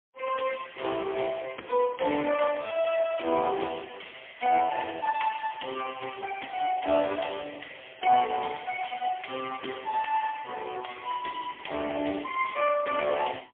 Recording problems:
phone line; 240 Hz to 3.2 kHz, AMR-NB, then MP3

